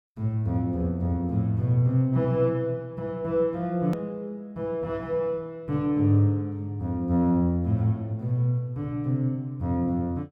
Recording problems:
hard cut with a click; at 4 s

